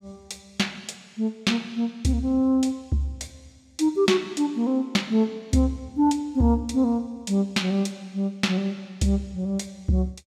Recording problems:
none

